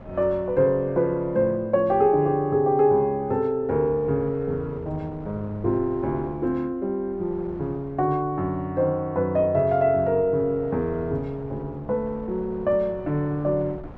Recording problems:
wind on the microphone; below 550 Hz, SNR 20 dB

